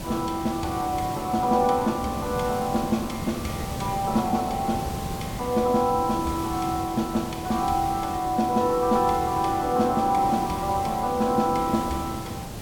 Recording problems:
hiss; SNR 9 dB

